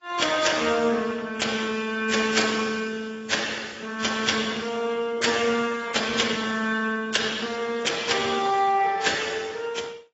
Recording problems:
lossy codec; Speex, then AAC, log-spectral distance 7 dB, nothing above 7.6 kHz

